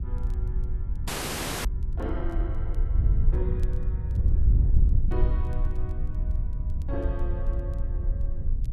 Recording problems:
wind noise; below 68 Hz, SNR -12 dB
crackling; vinyl, SNR 27 dB
frozen audio; at 1 s for 0.5 s

